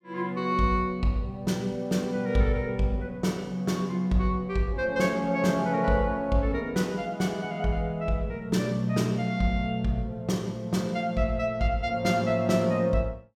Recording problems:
none

